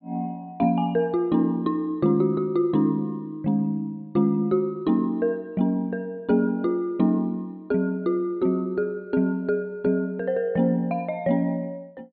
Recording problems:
treble cut off; nothing above 4.4 kHz

